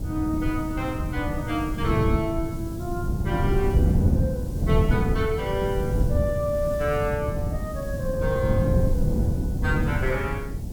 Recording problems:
hiss; slope +3 dB per octave, SNR 20 dB
wind on the microphone; below 170 Hz, SNR -2 dB

